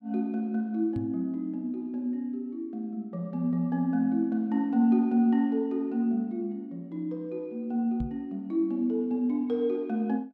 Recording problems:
microphone thump; at 1 s and at 8 s; peak -3 dB vs average level

